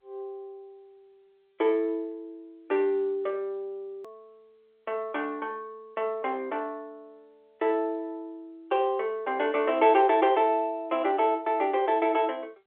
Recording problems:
phone line; 320 Hz to 3.5 kHz, G.711
click at an edit; at 4 s

